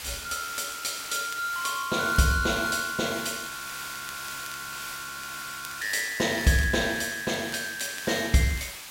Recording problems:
background hiss; slope +1 dB per octave, SNR 10 dB
crackle; vinyl, SNR 22 dB
audio freezing; at 3.5 s for 2.5 s

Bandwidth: 16 kHz